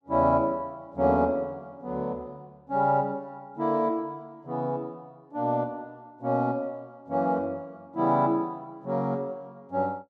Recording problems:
none

